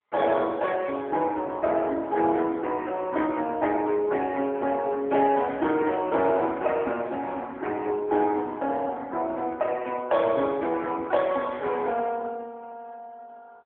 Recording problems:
phone line; 260 Hz to 3.9 kHz, AMR-NB

